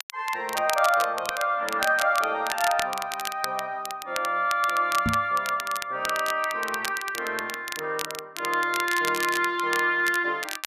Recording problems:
crackling; vinyl, SNR 9 dB
microphone bump; at 5 s; peak +2 dB vs average level

